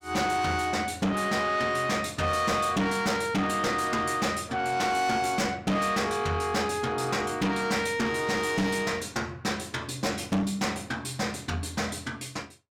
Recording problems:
distortion; soft clipping, signal-to-distortion ratio 8 dB

